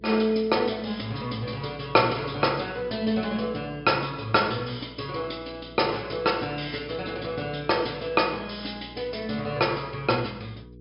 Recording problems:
low-pass filter; nothing above 5.5 kHz
hum; 60 Hz, harmonics up to 480 Hz, SNR 20 dB

